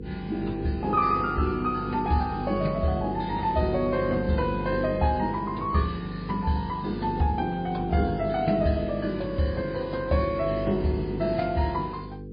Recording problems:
lossy codec; MP3, log-spectral distance 2 dB, nothing above 4.2 kHz
hum; 50 Hz, harmonics up to 500 Hz, SNR 8 dB

